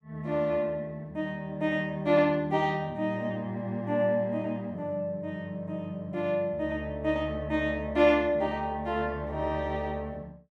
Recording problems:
none

